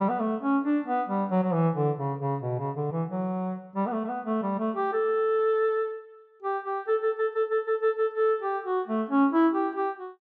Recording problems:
none

